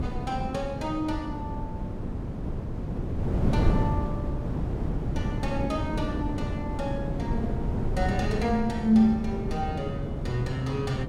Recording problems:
wind noise; below 240 Hz, SNR 1 dB

